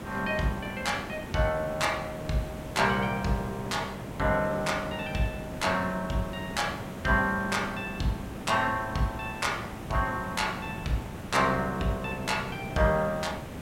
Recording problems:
background hiss; slope -7 dB per octave, SNR 10 dB

